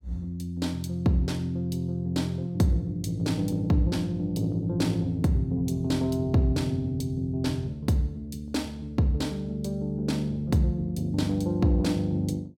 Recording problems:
none

